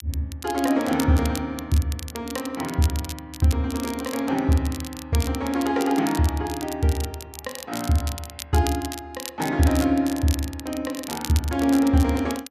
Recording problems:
crackle; vinyl, SNR 13 dB

